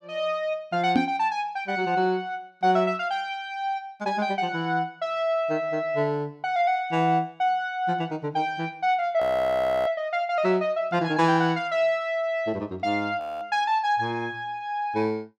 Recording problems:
microphone bump; at 1 s; peak +7 dB vs average level
audio freezing; at 9 s for 0.5 s and at 13 s

